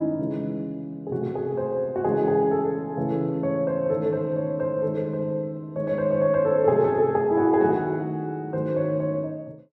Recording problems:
none

